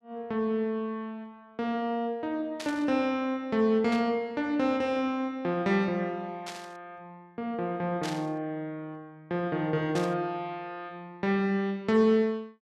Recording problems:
static burst; 5 times, first at 2.5 s; peak -4 dB vs average level

